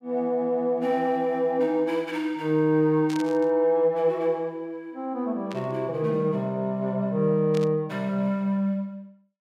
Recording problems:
burst of static; at 3 s, at 5.5 s and at 7.5 s; peak -10 dB vs average level

